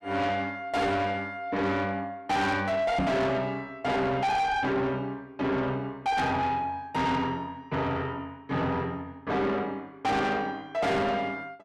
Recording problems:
distortion; soft clipping, signal-to-distortion ratio 8 dB
knock on the microphone; at 3 s; peak +4 dB vs average level

